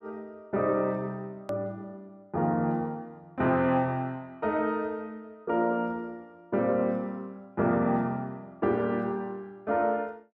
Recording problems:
click at an edit; at 1.5 s

